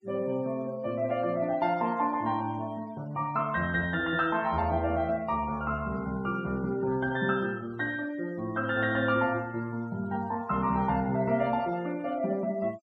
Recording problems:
denoising artefacts; signal-to-artefact ratio 23 dB

